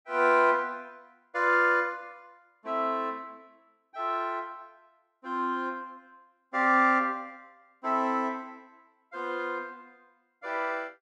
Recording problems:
none

